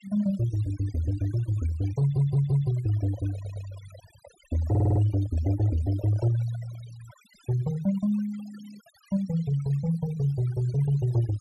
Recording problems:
noise reduction artefacts; signal-to-artefact ratio 20 dB
audio stuttering; at 2 s, at 3.5 s and at 4.5 s
handling noise; from 2 to 7 s; peak -12 dB vs average level

